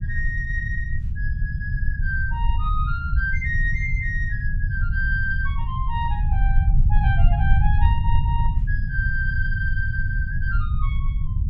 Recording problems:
low-frequency rumble; below 82 Hz, SNR -5 dB

